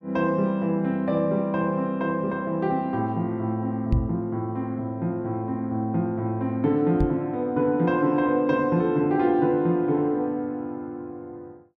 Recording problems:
microphone thump; at 4 s and at 7 s; peak +6 dB vs average level

